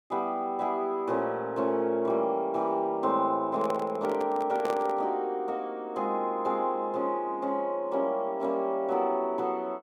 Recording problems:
handling noise; from 3.5 to 5 s; peak -2 dB vs average level

